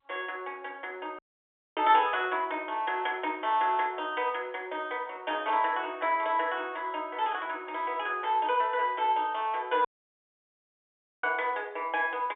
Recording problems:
telephone audio; 280 Hz to 3.6 kHz, G.711
audio cutting out; at 1 s for 0.5 s and at 10 s for 1.5 s

